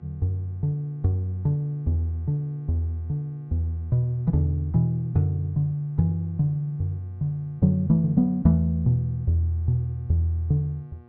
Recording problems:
low-pass filter; nothing above 8 kHz
hum; 60 Hz, harmonics up to 1.9 kHz, SNR 27 dB

